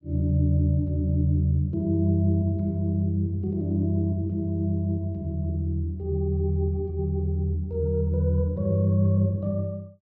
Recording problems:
none

